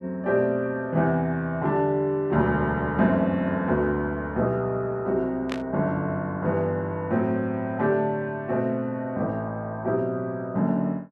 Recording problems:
static burst; at 5.5 s; peak -4 dB vs average level

